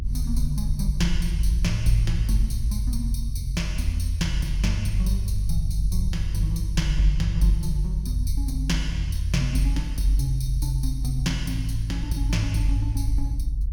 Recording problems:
rumble; below 52 Hz, strongest tone 50 Hz, SNR 1 dB

